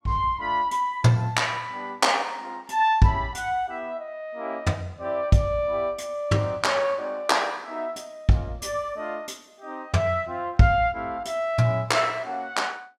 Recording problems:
none

